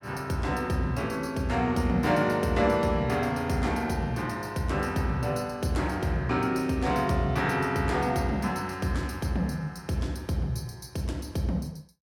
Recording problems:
none

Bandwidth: 16.5 kHz